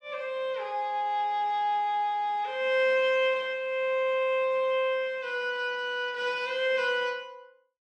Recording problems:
none

